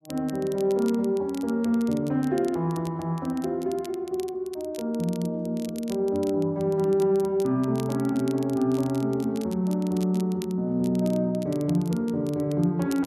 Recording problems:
crackling; vinyl, SNR 21 dB

